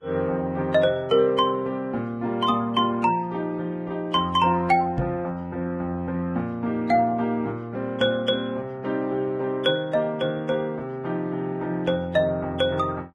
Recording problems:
lossy codec; Vorbis, log-spectral distance 2 dB, nothing above 10.7 kHz
microphone thump; at 5 s; peak +2 dB vs average level

